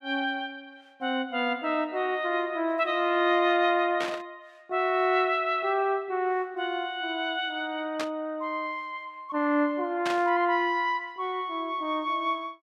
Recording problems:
burst of static; at 4 s, at 8 s and at 10 s; peak -1 dB vs average level

